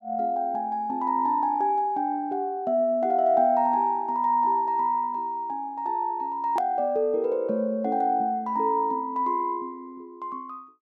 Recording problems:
edit click; at 6.5 s

